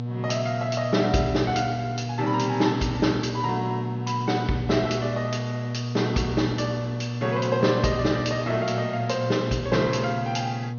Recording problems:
treble cut off; nothing above 6.5 kHz
hum; 60 Hz, harmonics up to 720 Hz, SNR 5 dB

